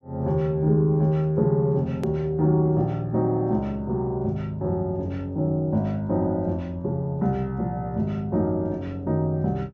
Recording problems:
treble cut off; nothing above 7.5 kHz
click at an edit; at 2 s

